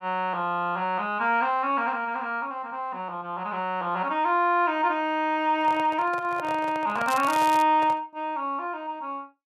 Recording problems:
handling noise; from 5.5 to 8 s; peak -4 dB vs average level
crackling; at 7 s; loose cable, SNR 14 dB

